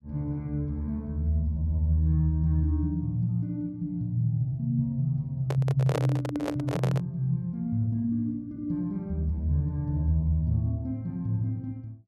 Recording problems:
microphone handling noise; from 5.5 to 7 s; peak +2 dB vs average level

